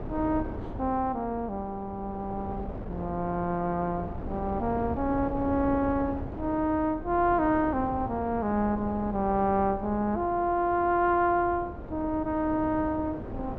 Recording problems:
wind noise; below 450 Hz, SNR 11 dB

